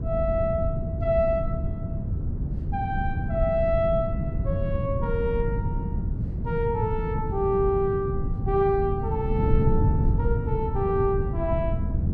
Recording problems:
wind noise; below 150 Hz, SNR 1 dB

